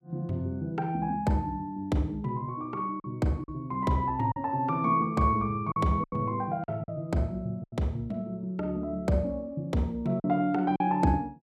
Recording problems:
lost packets; 4% of the sound replaced, filled with silence

